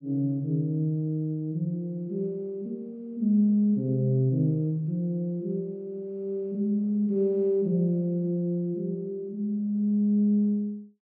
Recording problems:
none

